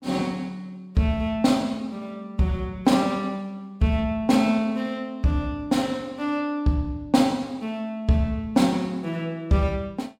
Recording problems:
none

